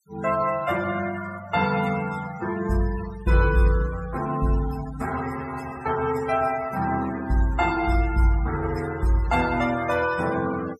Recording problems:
denoising artefacts; signal-to-artefact ratio 14 dB

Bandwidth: 15 kHz